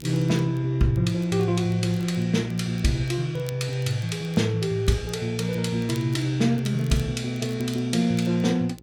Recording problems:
mains hum; 60 Hz, harmonics up to 540 Hz, SNR 25 dB
crackling; vinyl, SNR 26 dB

